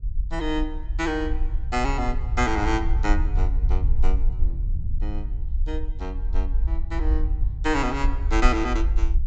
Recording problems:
treble cut off; nothing above 8 kHz
low-frequency rumble; below 52 Hz, SNR -1 dB
wind on the microphone; below 94 Hz, SNR 7 dB

